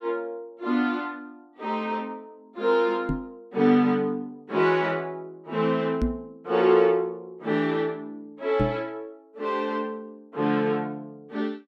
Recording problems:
microphone bump; at 3 s, at 6 s and at 8.5 s; peak +4 dB vs average level

